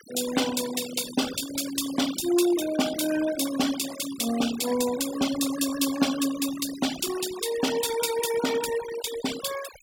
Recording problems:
noise reduction artefacts; signal-to-artefact ratio 10 dB

